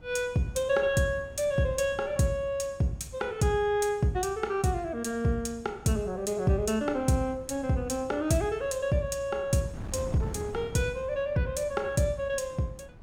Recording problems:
wind on the microphone; below 250 Hz, SNR 18 dB

